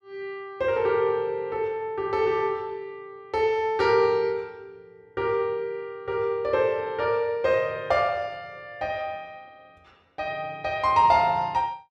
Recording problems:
none

